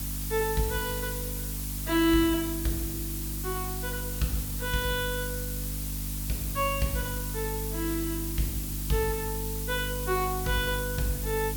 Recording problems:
electrical hum; 50 Hz, harmonics up to 300 Hz, SNR 5 dB
hiss; slope 0 dB per octave, SNR 4 dB

